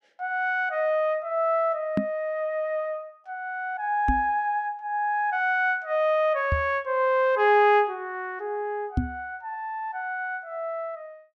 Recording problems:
knock on the microphone; 4 times, first at 2 s; peak +4 dB vs average level

